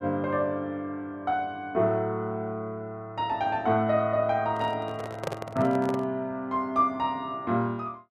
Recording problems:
microphone handling noise; from 4.5 to 6 s; peak +1 dB vs average level

